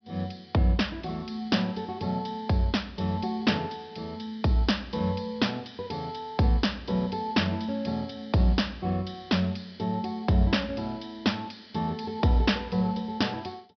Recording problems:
treble cut off; nothing above 5.5 kHz

